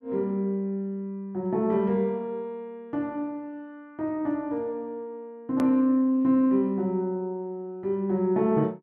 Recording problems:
click at an edit; at 5.5 s

